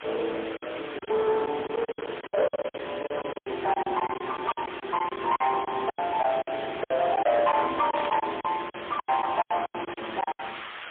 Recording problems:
phone line; 370 Hz to 3.5 kHz, AMR-NB, then MP3
distortion; hard clipping, uneven, signal-to-distortion ratio 11 dB
hiss; SNR 12 dB
packet loss; 16% of the sound replaced, filled with silence
static burst; at 4.5 s and at 8 s; peak -4 dB vs average level

